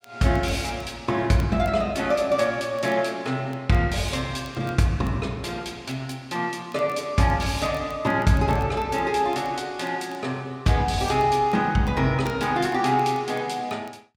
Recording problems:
crackle; vinyl, SNR 29 dB

